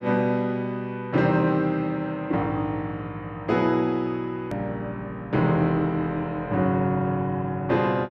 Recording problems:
edit click; at 4.5 s

